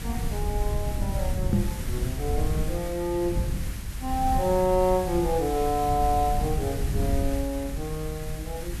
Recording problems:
hiss; SNR 12 dB
rumble; below 100 Hz, SNR 3 dB
microphone bump; at 1.5 s; peak +8 dB vs average level

